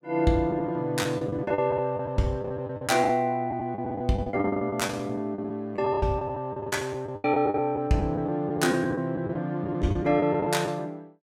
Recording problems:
packet loss; 14% of the sound replaced, filled with the last packet

